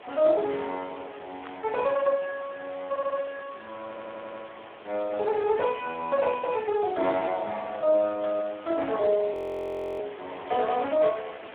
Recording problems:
telephone audio; 300 Hz to 3 kHz, Speex
hiss; SNR 18 dB
burst of static; at 1.5 s and at 8 s; peak -11 dB vs average level
stutter; at 3 s and at 4 s
audio freezing; at 9.5 s for 0.5 s

